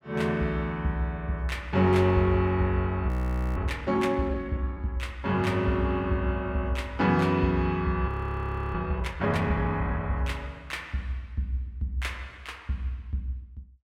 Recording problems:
audio freezing; at 3 s and at 8 s for 0.5 s

